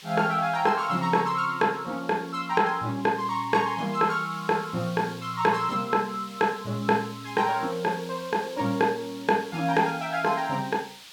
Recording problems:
background hiss; SNR 19 dB

